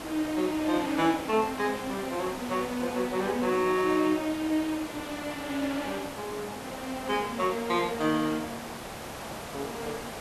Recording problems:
hiss; SNR 10 dB

